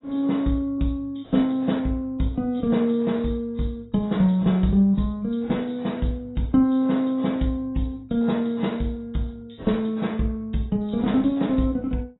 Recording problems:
codec artefacts; AAC, log-spectral distance 3 dB, nothing above 3.9 kHz

